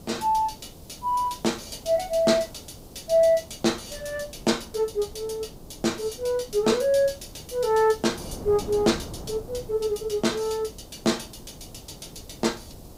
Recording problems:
background hiss; slope +7 dB per octave, SNR 27 dB
wind noise; below 440 Hz, SNR 19 dB

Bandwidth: 15.5 kHz